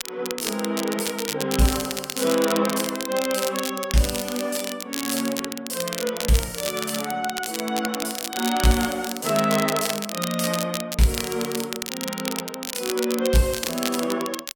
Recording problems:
crackle; vinyl, SNR 5 dB

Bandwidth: 17 kHz